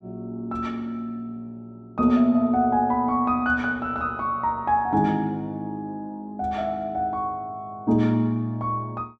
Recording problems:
none

